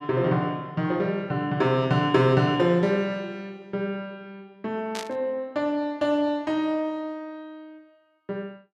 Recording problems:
static burst; at 5 s; peak -5 dB vs average level

